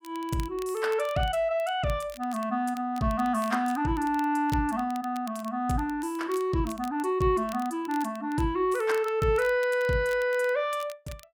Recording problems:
crackle; vinyl, SNR 22 dB

